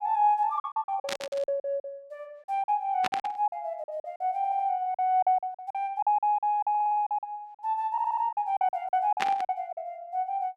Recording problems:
packet loss; 15% of the sound replaced, filled with silence
static burst; at 1 s, at 3 s and at 9 s; peak +3 dB vs average level
stutter; at 4.5 s, at 6.5 s and at 8 s

